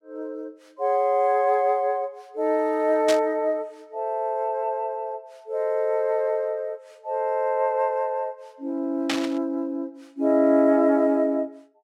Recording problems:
static burst; at 3 s and at 9 s; peak +2 dB vs average level

